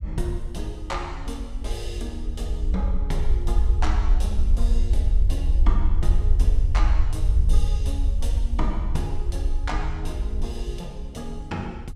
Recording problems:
rumble; below 58 Hz, SNR -8 dB

